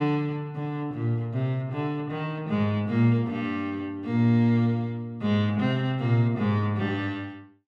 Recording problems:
none

